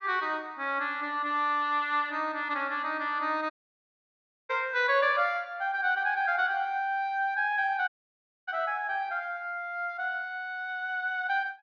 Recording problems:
treble cut off; nothing above 6.5 kHz
audio cutting out; at 3.5 s for 1 s and at 8 s for 0.5 s

